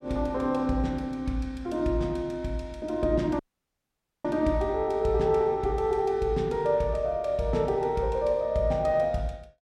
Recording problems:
audio cutting out; at 3.5 s for 1 s

